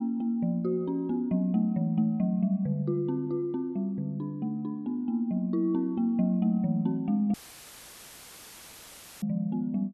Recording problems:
audio cutting out; at 7.5 s for 2 s; filled with static

